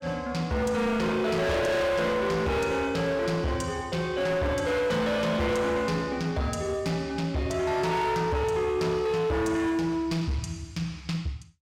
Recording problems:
distortion; hard clipping, uneven, signal-to-distortion ratio 7 dB

